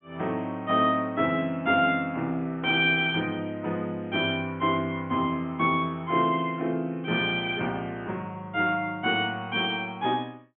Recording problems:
low-pass filter; nothing above 3.3 kHz

